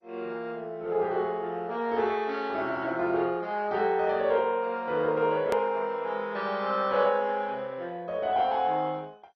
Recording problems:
lossy compression; MP2, log-spectral distance 2 dB, nothing above 13.1 kHz
edit click; at 5.5 s

